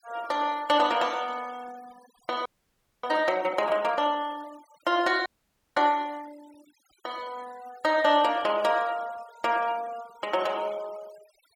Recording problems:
noise reduction artefacts; signal-to-artefact ratio 22 dB
frozen audio; at 2.5 s for 0.5 s and at 5.5 s for 0.5 s

